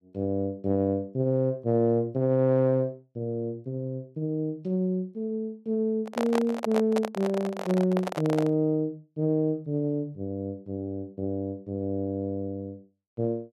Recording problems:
microphone handling noise; from 6 to 8.5 s; peak +1 dB vs average level

